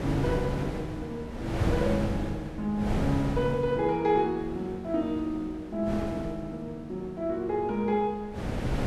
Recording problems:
wind on the microphone; below 480 Hz, SNR 4 dB

